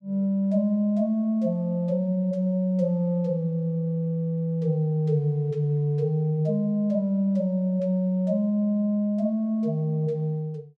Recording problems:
none

